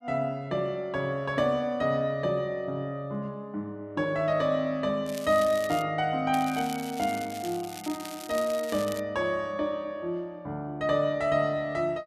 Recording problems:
crackling; at 5 s and from 6.5 to 9 s; loose cable, SNR 14 dB

